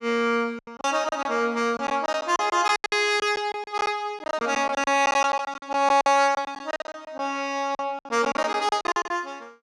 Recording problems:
packet loss; 16% of the sound replaced, filled with silence

